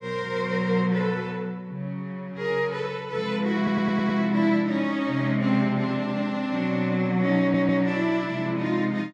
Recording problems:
audio stuttering; at 3.5 s and at 7.5 s

